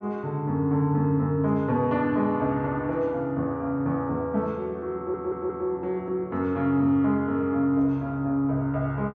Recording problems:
stutter; at 5 s

